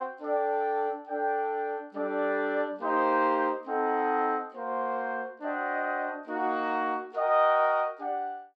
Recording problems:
none

